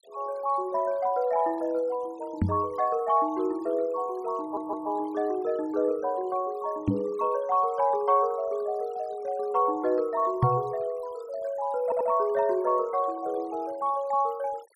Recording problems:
noise reduction artefacts; signal-to-artefact ratio 26 dB
knock on the microphone; at 2.5 s, at 7 s and at 10 s; peak +7 dB vs average level
audio stuttering; at 4.5 s and at 12 s

